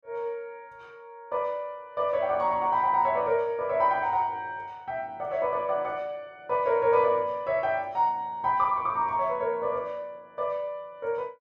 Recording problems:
none

